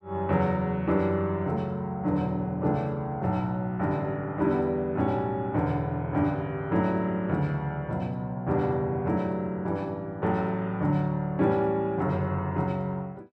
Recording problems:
none

